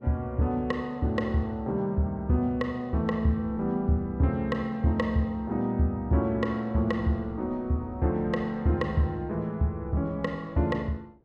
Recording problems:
wind noise; below 380 Hz, SNR 23 dB

